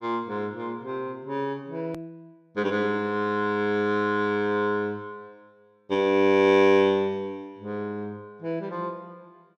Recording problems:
hard cut with a click; at 2 s

